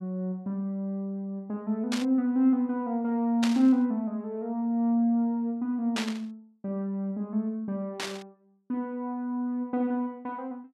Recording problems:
static burst; 4 times, first at 2 s; peak 0 dB vs average level

